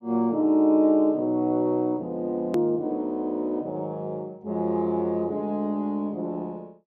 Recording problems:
treble cut off; nothing above 7.2 kHz
hard cut with a click; at 2.5 s

